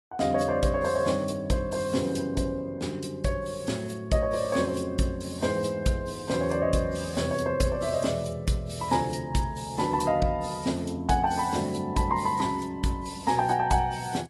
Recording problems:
lossy compression; AAC, log-spectral distance 4 dB, nothing above 11.3 kHz

